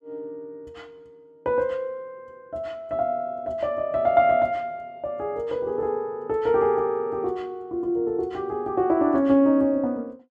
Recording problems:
none

